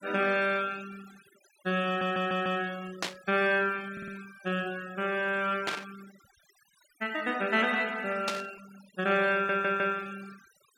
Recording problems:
noise reduction artefacts; signal-to-artefact ratio 20 dB
audio stuttering; at 2 s, at 4 s and at 9.5 s
burst of static; at 3 s, at 5.5 s and at 8.5 s; peak +2 dB vs average level

